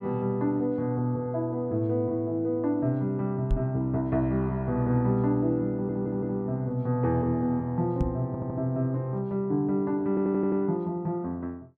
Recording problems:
knock on the microphone; at 3.5 s and at 8 s; peak +3 dB vs average level
audio stuttering; at 5.5 s, at 8.5 s and at 10 s

